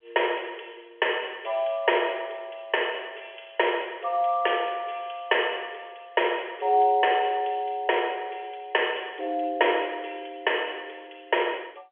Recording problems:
phone line; 370 Hz to 3.3 kHz, G.711

